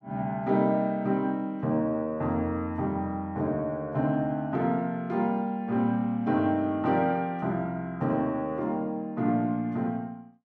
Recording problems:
none

